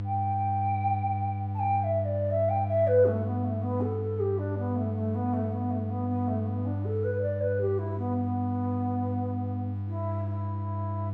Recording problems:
hum; 50 Hz, harmonics up to 500 Hz, SNR 2 dB

